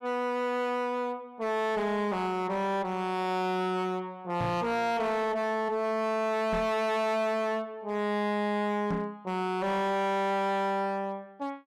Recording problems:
distortion; hard clipping, signal-to-distortion ratio 7 dB
microphone thump; at 4.5 s, at 6.5 s and at 9 s; peak +1 dB vs average level

